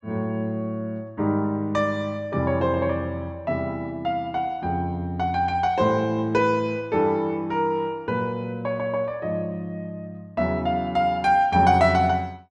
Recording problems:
none

